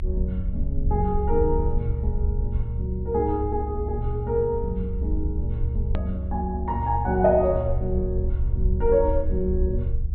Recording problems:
treble cut off; nothing above 4.2 kHz
rumble; below 70 Hz, SNR 2 dB
click at an edit; at 6 s

